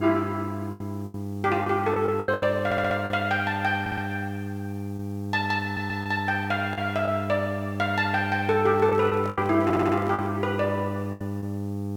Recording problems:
mains hum; 50 Hz, harmonics up to 900 Hz, SNR 7 dB
hiss; slope +1 dB per octave, SNR 30 dB
packet loss; 8% of the sound replaced, filled with the last packet
stutter; 4 times, first at 2.5 s
microphone handling noise; from 8.5 to 10 s; peak -9 dB vs average level

